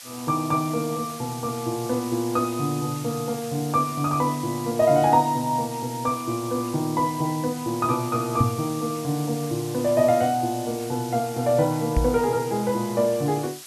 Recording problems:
background hiss; slope +3 dB per octave, SNR 14 dB
microphone thump; at 8.5 s and at 12 s; peak +6 dB vs average level

